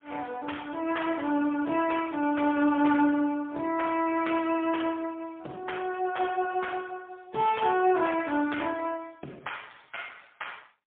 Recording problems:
phone line; 170 Hz to 3.4 kHz, AMR-NB, then MP3

